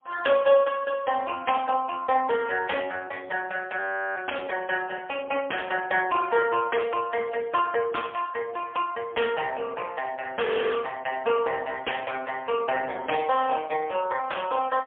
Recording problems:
phone line; 300 Hz to 3.3 kHz, AMR-NB, then MP3
frozen audio; at 4 s and at 10 s

